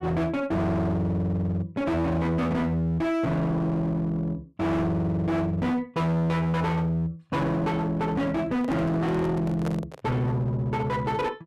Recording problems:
distorted audio; hard clipping, signal-to-distortion ratio 7 dB
microphone handling noise; from 8.5 to 10 s; peak -3 dB vs average level

